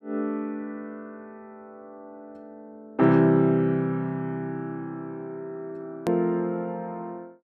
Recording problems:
hard cut with a click; at 6 s

